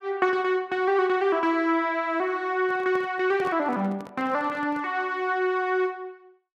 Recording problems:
microphone handling noise; from 2.5 to 5 s; peak -10 dB vs average level

